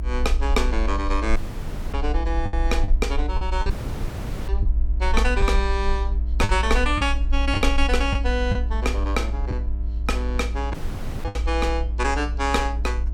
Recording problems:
electrical hum; 50 Hz, harmonics up to 1.3 kHz, SNR 16 dB
rumble; below 58 Hz, SNR 0 dB
lost packets; 5% of the sound replaced, filled with the last packet
audio cutting out; at 1.5 s for 0.5 s, at 3.5 s for 1 s and at 11 s for 0.5 s

